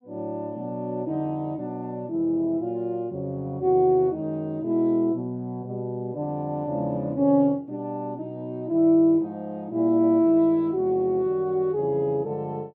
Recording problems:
none

